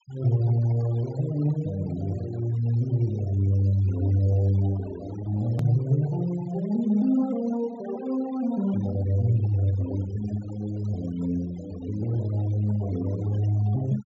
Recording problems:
treble cut off; nothing above 7.6 kHz
denoising artefacts; signal-to-artefact ratio 20 dB
edit click; at 5.5 s

